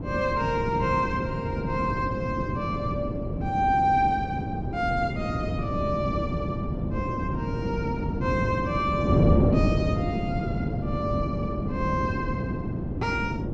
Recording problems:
wind noise; below 300 Hz, SNR 0 dB

